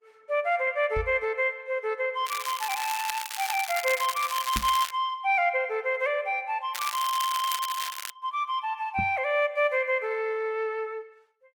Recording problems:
lossy codec; Opus, log-spectral distance 3 dB
microphone bump; at 1 s, at 4.5 s and at 9 s; peak -2 dB vs average level
crackling; from 2.5 to 5 s and from 6.5 to 8 s; loose cable, SNR 8 dB

